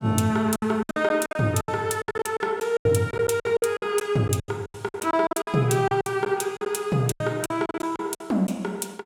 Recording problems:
packet loss; 18% of the sound replaced, filled with silence

